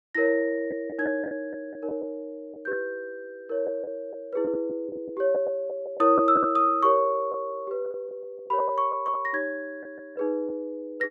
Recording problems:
packet loss; 6% of the sound replaced, filled with the last packet

